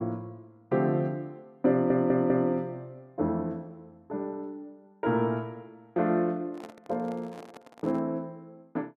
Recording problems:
audio stuttering; at 1.5 s
microphone handling noise; from 6.5 to 8 s; peak -11 dB vs average level

